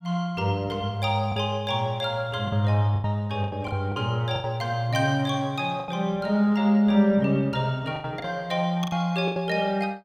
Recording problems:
packet loss; 8% of the sound replaced, filled with the last packet

